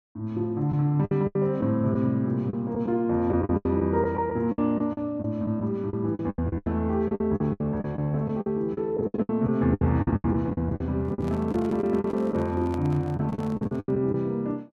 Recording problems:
packet loss; 14% of the sound replaced, filled with the last packet
microphone handling noise; from 11 to 14 s; peak -8 dB vs average level

